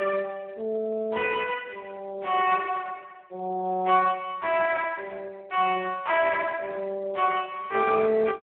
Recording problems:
telephone audio; 240 Hz to 3 kHz, Speex

